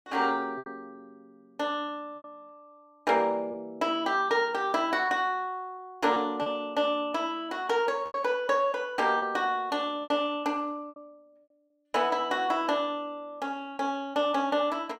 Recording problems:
packet loss; 4% of the sound replaced, filled with repeated pitch periods

